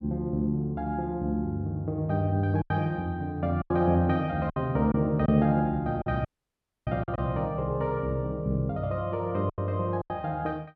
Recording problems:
lost packets; 5% of the sound replaced, filled with silence
dropout; at 6.5 s for 0.5 s

